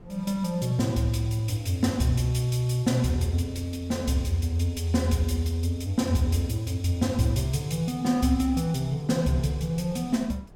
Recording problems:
wind on the microphone; below 270 Hz, SNR 24 dB

